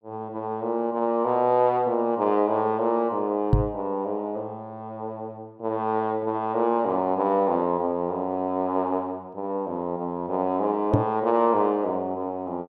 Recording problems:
knock on the microphone; at 3.5 s and at 11 s; peak +9 dB vs average level

